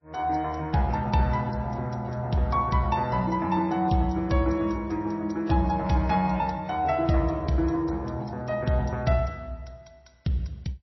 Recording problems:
codec artefacts; AAC, then MP3, log-spectral distance 3 dB, nothing above 5.8 kHz

